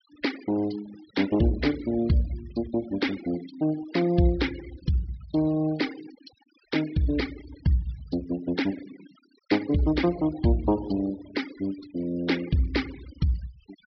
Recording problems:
treble missing; nothing above 5.5 kHz
noise reduction artefacts; signal-to-artefact ratio 17 dB

